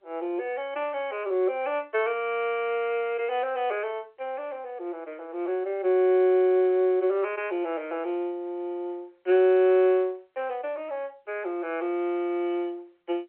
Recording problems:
phone line; 300 Hz to 3.5 kHz, G.711

